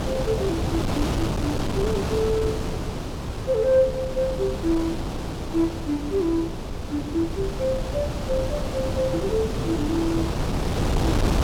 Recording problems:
wind noise; below 520 Hz, SNR 2 dB

